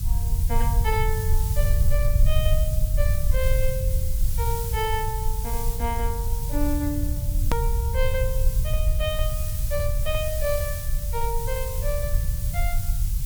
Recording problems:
background hiss; slope +2 dB per octave, SNR 5 dB
low-frequency rumble; below 74 Hz, SNR -5 dB
click at an edit; at 7.5 s

